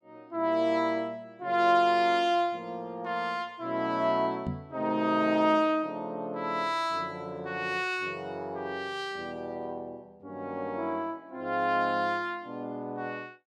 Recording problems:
knock on the microphone; at 4.5 s; peak 0 dB vs average level

